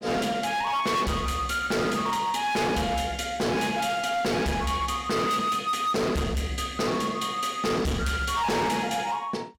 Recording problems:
distortion; hard clipping, signal-to-distortion ratio 7 dB

